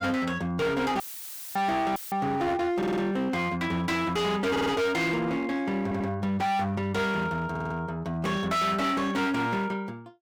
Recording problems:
distorted audio; hard clipping, signal-to-distortion ratio 8 dB
dropout; at 1 s for 0.5 s and at 2 s; filled with static
audio stuttering; 4 times, first at 3 s

